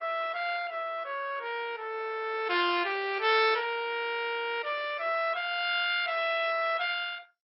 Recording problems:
lossy codec; MP2, log-spectral distance 5 dB, nothing above 4.6 kHz

